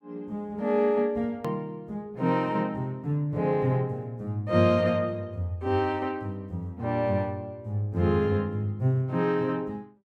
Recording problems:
hard cut with a click; at 1.5 s

